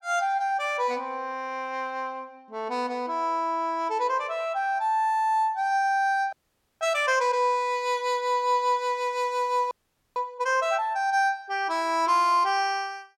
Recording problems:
frozen audio; at 6.5 s and at 9.5 s

